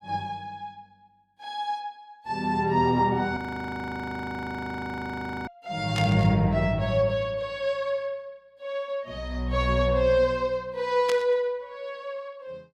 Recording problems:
audio freezing; at 3.5 s for 2 s
static burst; at 6 s and at 11 s; peak -2 dB vs average level

